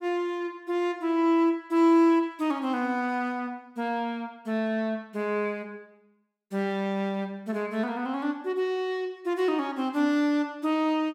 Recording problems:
none

